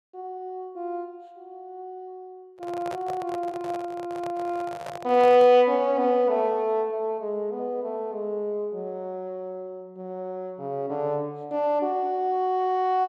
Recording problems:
handling noise; from 2.5 to 5.5 s; peak -7 dB vs average level

